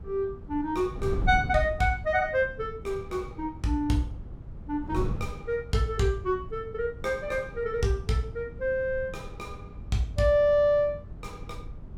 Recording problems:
wind on the microphone; below 130 Hz, SNR 12 dB

